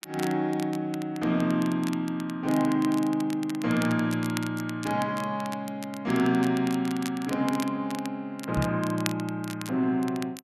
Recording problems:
crackling; vinyl, SNR 15 dB
knock on the microphone; at 8.5 s; peak +3 dB vs average level

